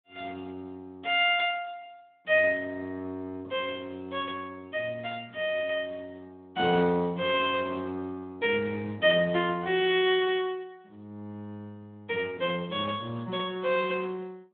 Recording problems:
telephone audio; 130 Hz to 3.6 kHz, Speex

